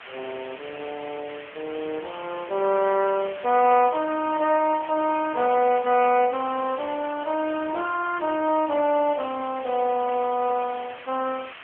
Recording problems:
phone line; 320 Hz to 3.2 kHz, AMR-NB
background hiss; SNR 17 dB

